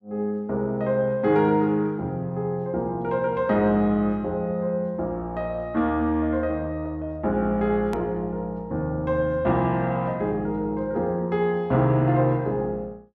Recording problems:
edit click; at 8 s

